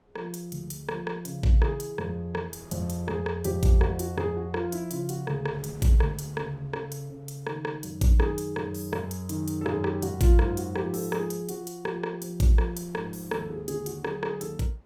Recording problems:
wind on the microphone; below 670 Hz, SNR 28 dB

